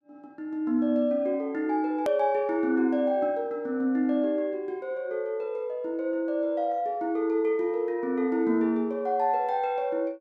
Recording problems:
click at an edit; at 2 s

